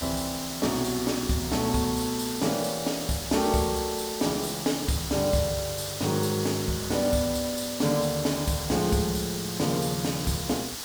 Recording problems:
background hiss; SNR 6 dB

